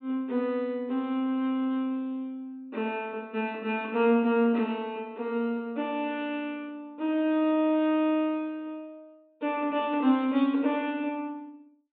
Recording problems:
treble missing; nothing above 4 kHz

